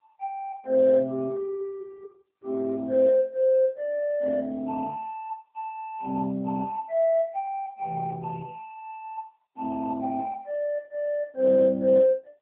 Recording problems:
telephone audio; 900 Hz to 2.3 kHz, AMR-NB

